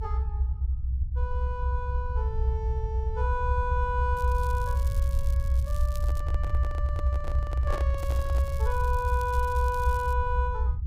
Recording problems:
rumble; below 74 Hz, strongest tone 62 Hz, SNR -4 dB
crackling; from 4 to 6 s and from 8 to 10 s; loose cable, SNR 17 dB
handling noise; from 6 to 8.5 s; peak 0 dB vs average level

